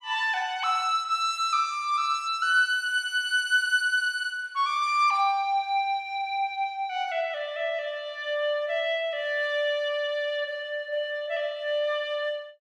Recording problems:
none

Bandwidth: 13 kHz